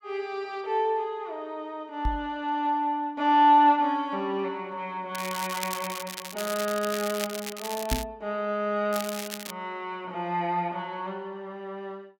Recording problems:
microphone bump; at 2 s and at 8 s; peak +2 dB vs average level
crackle; from 5 to 8 s and at 9 s; loose cable, SNR 8 dB

